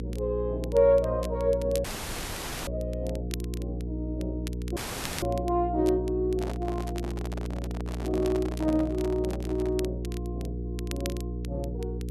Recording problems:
electrical hum; 60 Hz, harmonics up to 480 Hz, SNR 5 dB
crackling; vinyl, SNR 18 dB
dropout; at 2 s for 1 s and at 5 s
handling noise; from 6.5 to 10 s; peak -6 dB vs average level

